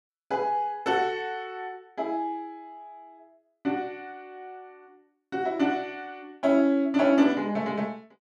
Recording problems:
none

